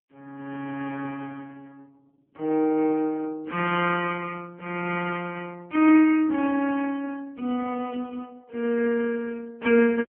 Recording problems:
phone line; 190 Hz to 2.8 kHz, AMR-NB

